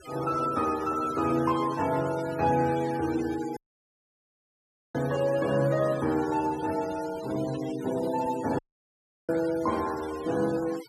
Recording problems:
denoising artefacts; signal-to-artefact ratio 15 dB
audio cutting out; at 3.5 s for 1.5 s and at 8.5 s for 0.5 s

